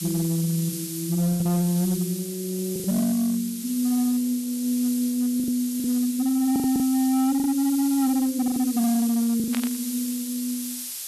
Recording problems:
distortion; hard clipping, signal-to-distortion ratio 12 dB
background hiss; slope +4 dB per octave, SNR 9 dB
packet loss; 6% of the sound replaced, filled with the last packet
static burst; at 9.5 s; peak -6 dB vs average level

